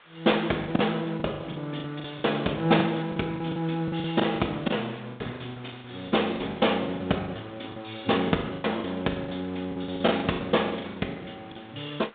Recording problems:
phone line; 190 Hz to 3.7 kHz, G.726
background hiss; SNR 23 dB
packet loss; 16% of the sound replaced, filled with the last packet

